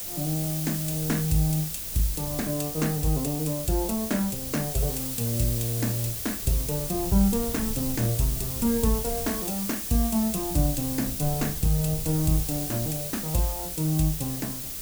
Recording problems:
hum; 60 Hz, harmonics up to 420 Hz, SNR 26 dB
background hiss; SNR 3 dB
rumble; below 100 Hz, SNR 16 dB

